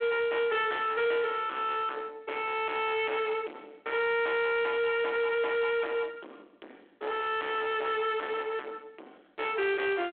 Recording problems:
telephone audio; 280 Hz to 3.5 kHz, G.726
distortion; soft clipping, signal-to-distortion ratio 8 dB

